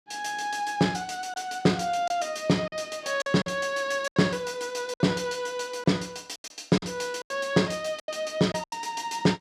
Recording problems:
packet loss; 8% of the sound replaced, filled with silence

